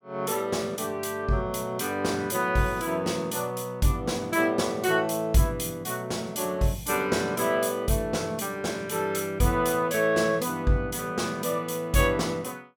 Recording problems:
none

